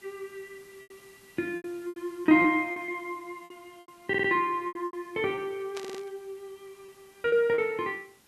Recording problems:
background hiss; slope -2 dB per octave, SNR 29 dB
packet loss; 11% of the sound replaced, filled with repeated pitch periods
stutter; at 4 s and at 6 s
static burst; at 6 s; peak -8 dB vs average level

